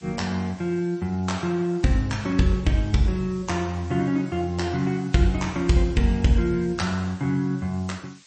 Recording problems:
lossy codec; MP3, log-spectral distance 4 dB, nothing above 8.2 kHz
background hiss; slope +3 dB per octave, SNR 26 dB

